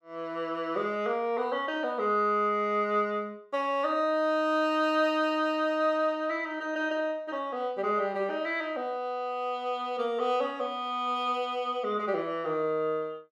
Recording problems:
none

